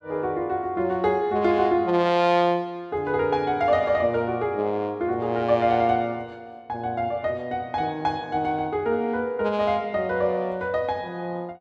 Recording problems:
none

